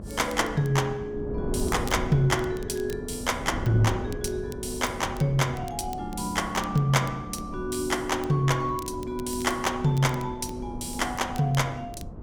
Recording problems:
electrical hum; 50 Hz, harmonics up to 1.1 kHz, SNR 21 dB
wind on the microphone; below 320 Hz, SNR 11 dB
crackling; vinyl, SNR 22 dB

